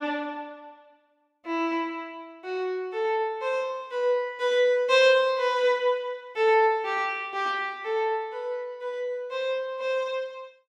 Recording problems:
none

